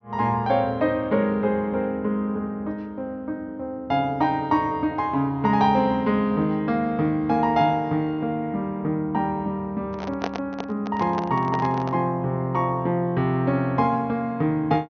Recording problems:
low-pass filter; nothing above 6.4 kHz
handling noise; from 10 to 12 s; peak 0 dB vs average level

